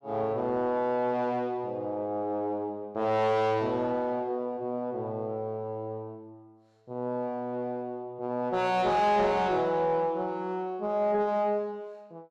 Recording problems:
distorted audio; soft clipping, signal-to-distortion ratio 10 dB

